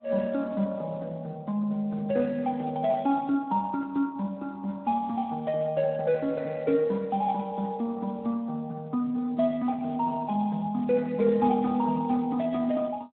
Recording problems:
phone line; 190 Hz to 3.1 kHz, Speex

